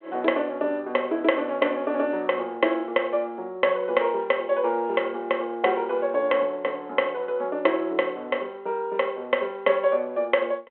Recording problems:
telephone audio; 260 Hz to 3.5 kHz, G.726

